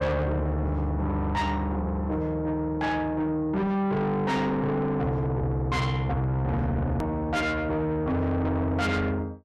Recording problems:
distorted audio; soft clipping, signal-to-distortion ratio 8 dB
edit click; at 7 s

